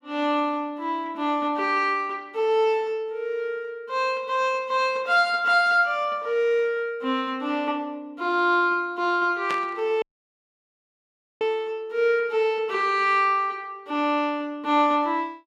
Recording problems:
burst of static; at 9.5 s; peak -4 dB vs average level
dropout; at 10 s for 1.5 s

